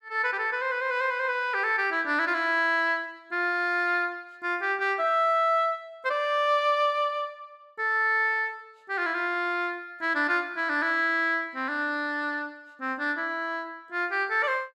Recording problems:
none

